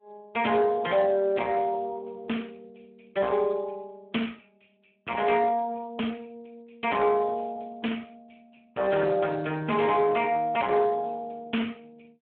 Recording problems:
phone line; 190 Hz to 3.1 kHz, Speex
distorted audio; soft clipping, signal-to-distortion ratio 11 dB

